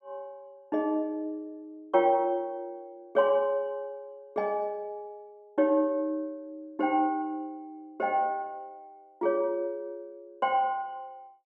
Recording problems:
none

